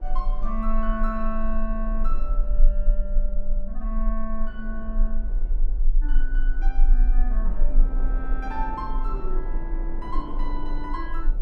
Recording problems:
low-frequency rumble; below 32 Hz, strongest tone 26 Hz, SNR -7 dB
wind on the microphone; below 490 Hz, SNR 9 dB

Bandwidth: 13 kHz